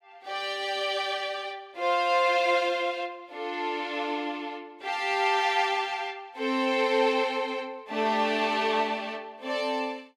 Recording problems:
none

